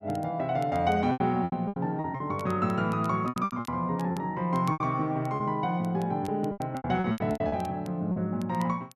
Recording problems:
crackling; vinyl, SNR 25 dB
packet loss; 14% of the sound replaced, filled with repeated pitch periods

